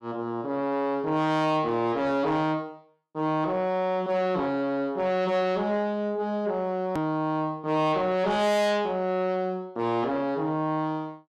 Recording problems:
distortion; soft clipping, signal-to-distortion ratio 11 dB
click at an edit; at 7 s

